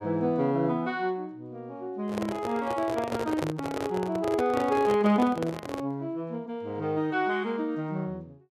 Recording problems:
handling noise; from 2 to 6 s; peak +1 dB vs average level

